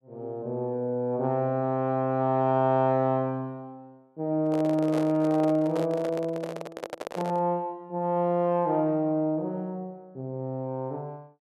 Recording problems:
microphone handling noise; from 4.5 to 7.5 s; peak -4 dB vs average level

